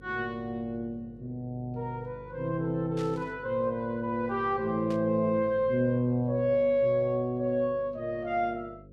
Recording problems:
hum; 50 Hz, harmonics up to 550 Hz, SNR 21 dB
static burst; at 3 s and at 5 s; peak -12 dB vs average level

